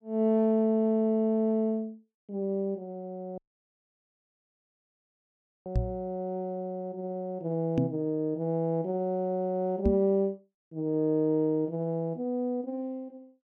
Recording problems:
audio cutting out; at 3.5 s for 2.5 s
knock on the microphone; at 6 s, at 8 s and at 10 s; peak +5 dB vs average level

